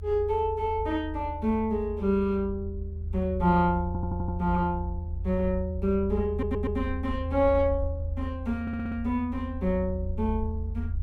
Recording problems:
low-frequency rumble; below 82 Hz, strongest tone 80 Hz, SNR 6 dB
audio stuttering; at 4 s, at 6.5 s and at 8.5 s

